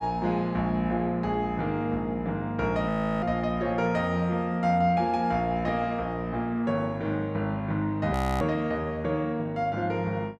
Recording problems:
audio freezing; at 3 s and at 8 s

